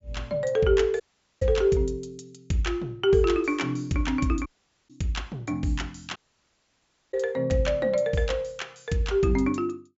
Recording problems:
treble missing; nothing above 8 kHz
dropout; at 1 s, at 4.5 s and at 6 s for 1 s

